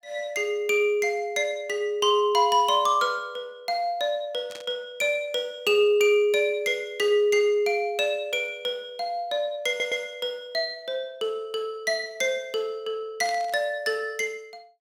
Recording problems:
burst of static; at 4.5 s and at 13 s; peak -12 dB vs average level
stutter; at 9.5 s

